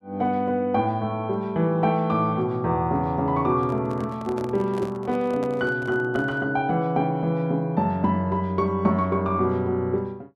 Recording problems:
handling noise; from 3.5 to 6.5 s; peak -9 dB vs average level

